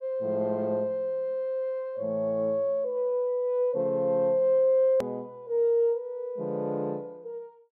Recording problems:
click at an edit; at 5 s

